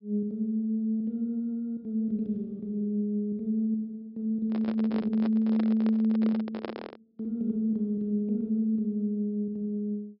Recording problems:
treble cut off; nothing above 5.3 kHz
handling noise; from 4.5 to 7 s; peak -3 dB vs average level

